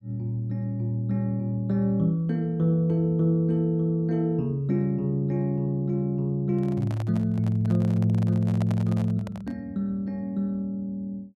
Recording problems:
microphone handling noise; from 6.5 to 9.5 s; peak -7 dB vs average level

